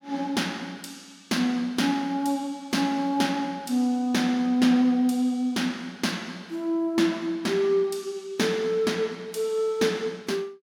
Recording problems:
none

